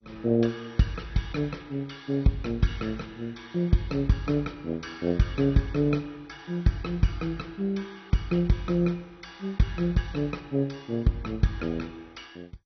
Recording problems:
lossy compression; MP2, log-spectral distance 3 dB, nothing above 6 kHz

